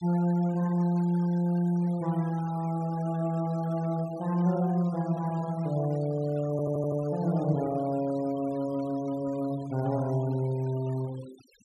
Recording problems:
denoising artefacts; signal-to-artefact ratio 22 dB
audio stuttering; at 6.5 s

